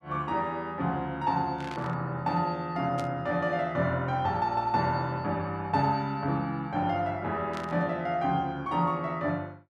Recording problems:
static burst; at 1.5 s, at 3 s and at 7.5 s; peak -9 dB vs average level

